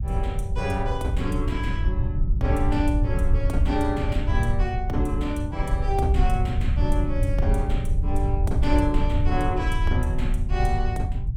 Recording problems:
rumble; below 84 Hz, SNR -2 dB

